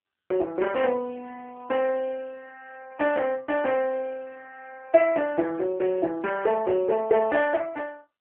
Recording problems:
telephone audio; 320 Hz to 3.3 kHz, AMR-NB

